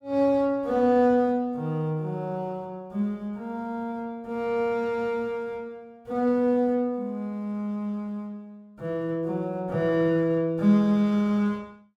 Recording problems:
none

